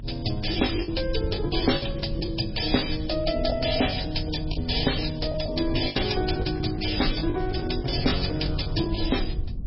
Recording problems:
lossy compression; MP3, log-spectral distance 9 dB, nothing above 5.2 kHz
low-frequency rumble; below 94 Hz, SNR 8 dB
lost packets; 11% of the sound replaced, filled with the last packet
crackling; from 5.5 to 8.5 s; loose cable, SNR 23 dB

